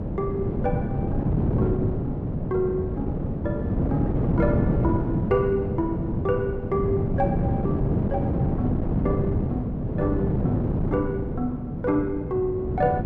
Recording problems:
wind on the microphone; below 290 Hz, SNR -3 dB

